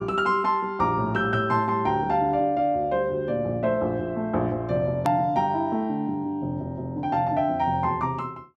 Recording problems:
hard cut with a click; at 5 s

